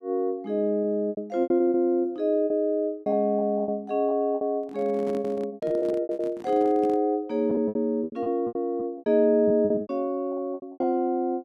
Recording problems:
packet loss; 16% of the sound replaced, filled with repeated pitch periods
handling noise; from 4.5 to 7 s; peak -7 dB vs average level

